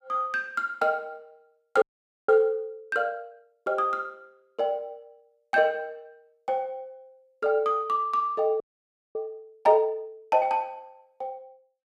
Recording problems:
frozen audio; at 2 s and at 8.5 s for 0.5 s

